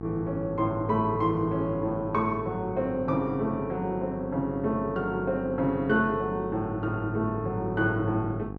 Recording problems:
hum; 50 Hz, harmonics up to 1.3 kHz, SNR 11 dB

